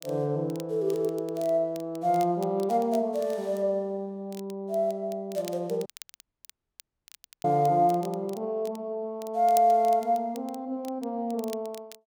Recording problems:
crackle; vinyl, SNR 21 dB
dropout; at 6 s for 1.5 s

